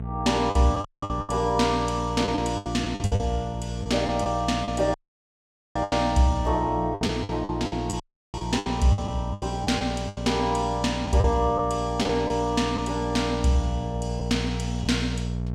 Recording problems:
electrical hum; 60 Hz, harmonics up to 720 Hz, SNR 7 dB
lost packets; 10% of the sound replaced, filled with the last packet
audio cutting out; at 1 s, at 5 s for 1 s and at 8 s

